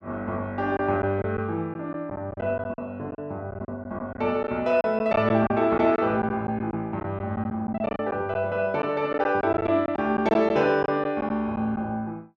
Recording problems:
lost packets; 8% of the sound replaced, filled with silence

